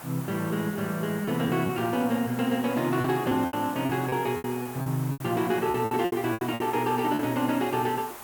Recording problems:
background hiss; SNR 14 dB
packet loss; 10% of the sound replaced, filled with repeated pitch periods

